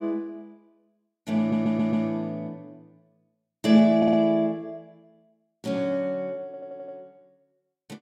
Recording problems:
stutter; at 1.5 s, at 4 s and at 6.5 s

